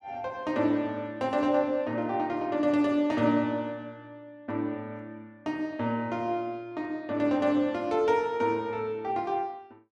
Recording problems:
none

